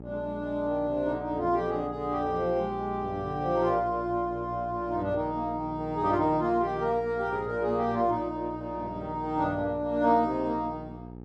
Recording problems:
electrical hum; 60 Hz, harmonics up to 900 Hz, SNR 14 dB

